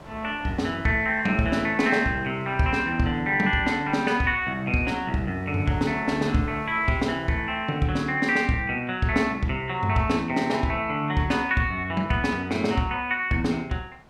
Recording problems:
wind on the microphone; below 1.1 kHz, SNR 23 dB

